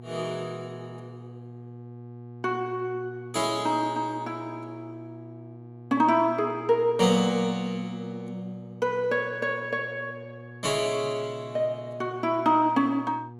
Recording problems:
hum; 60 Hz, harmonics up to 840 Hz, SNR 17 dB

